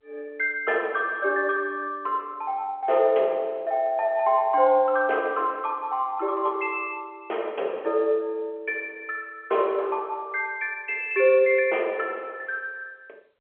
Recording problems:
telephone audio; 340 Hz to 3.6 kHz, G.711

